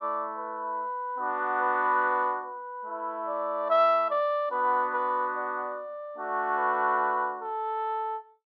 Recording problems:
none

